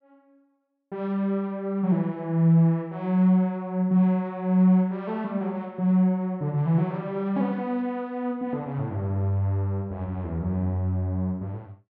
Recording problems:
none

